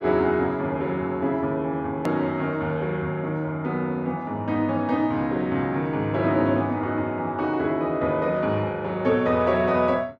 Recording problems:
click at an edit; at 2 s

